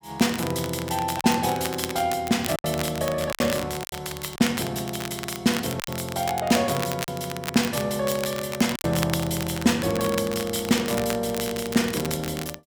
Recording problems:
crackling; vinyl, SNR 9 dB
packet loss; 4% of the sound replaced, filled with silence

